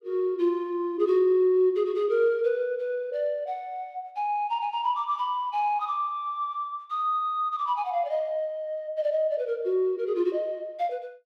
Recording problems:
none

